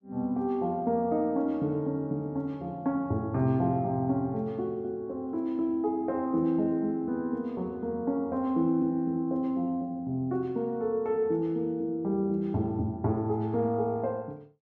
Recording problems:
none

